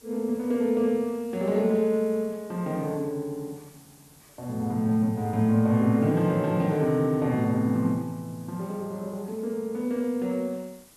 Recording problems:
hiss; SNR 26 dB

